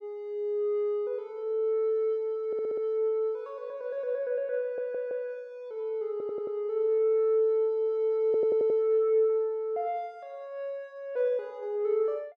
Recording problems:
audio stuttering; 4 times, first at 2.5 s

